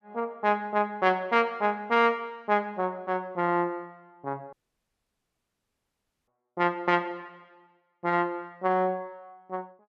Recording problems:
audio cutting out; at 4.5 s for 2 s

